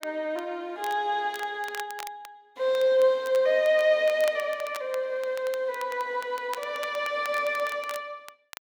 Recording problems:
crackle; vinyl, SNR 18 dB

